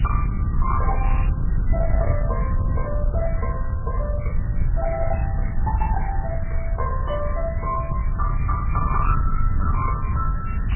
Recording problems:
lossy codec; MP3, log-spectral distance 8 dB, nothing above 2.7 kHz
distortion; soft clipping, signal-to-distortion ratio 10 dB
background hiss; SNR 13 dB
rumble; below 90 Hz, SNR -3 dB
wind noise; below 100 Hz, SNR 4 dB

